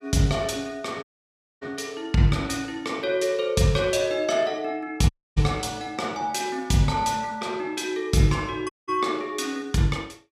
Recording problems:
dropout; at 1 s for 0.5 s, at 5 s and at 8.5 s

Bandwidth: 14.5 kHz